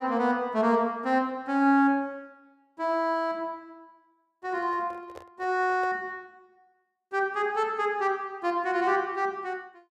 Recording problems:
handling noise; from 4.5 to 6 s; peak -12 dB vs average level

